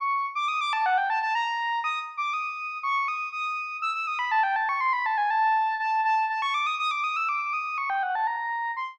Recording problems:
none

